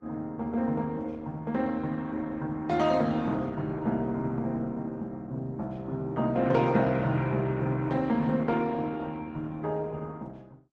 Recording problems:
codec artefacts; Vorbis, then Opus, log-spectral distance 2 dB

